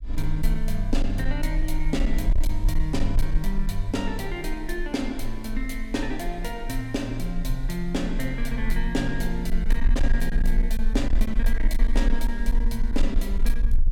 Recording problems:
distortion; hard clipping, uneven, signal-to-distortion ratio 11 dB
rumble; below 36 Hz, strongest tone 20 Hz, SNR -1 dB

